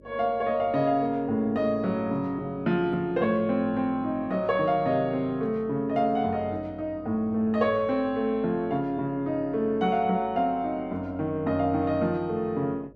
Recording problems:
hum; 50 Hz, harmonics up to 600 Hz, SNR 25 dB

